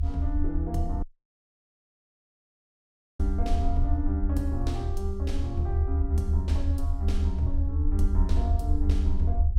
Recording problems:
rumble; below 78 Hz, SNR -7 dB
dropout; at 1 s for 2 s

